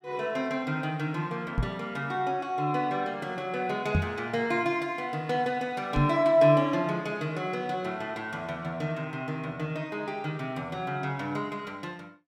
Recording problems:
microphone thump; at 1.5 s, at 4 s and at 6 s; peak +7 dB vs average level

